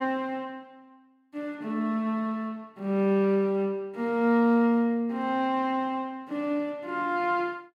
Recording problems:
none

